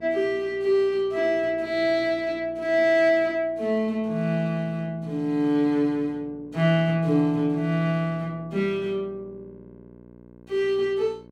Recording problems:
hum; 60 Hz, harmonics up to 1.1 kHz, SNR 24 dB

